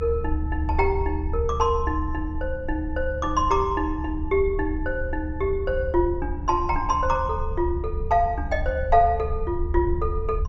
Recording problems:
treble missing; nothing above 7.5 kHz
low-frequency rumble; below 74 Hz, SNR 6 dB

